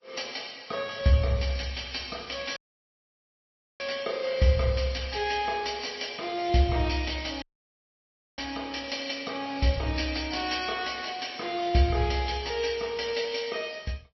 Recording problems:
lossy compression; MP3, log-spectral distance 8 dB, nothing above 5.7 kHz
audio cutting out; at 2.5 s for 1 s and at 7.5 s for 1 s

